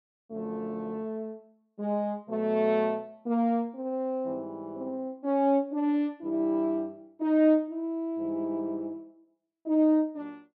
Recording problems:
none

